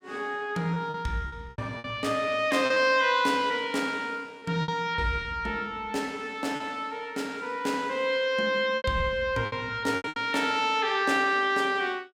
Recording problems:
packet loss; 6% of the sound replaced, filled with repeated pitch periods

